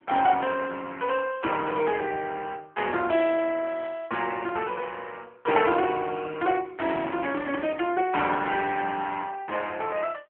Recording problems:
telephone audio; 240 Hz to 3.3 kHz, AMR-NB

